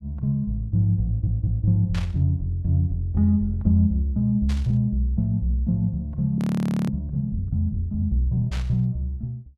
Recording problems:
audio stuttering; at 1 s
burst of static; at 2 s, at 4.5 s and at 8.5 s; peak -9 dB vs average level
audio freezing; at 6.5 s for 0.5 s

